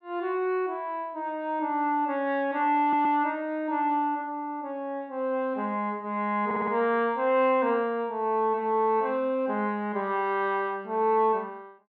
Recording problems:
stutter; at 3 s and at 6.5 s

